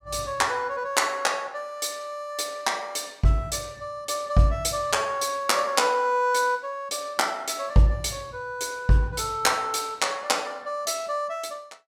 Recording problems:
none

